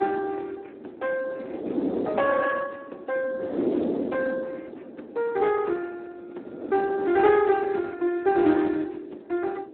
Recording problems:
phone line; 240 Hz to 2.8 kHz, Speex
wind on the microphone; below 480 Hz, SNR 6 dB

